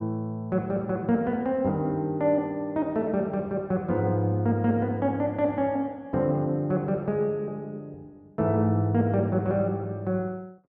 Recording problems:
none

